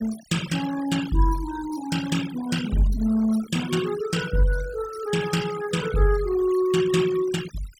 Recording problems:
noise reduction artefacts; signal-to-artefact ratio 13 dB

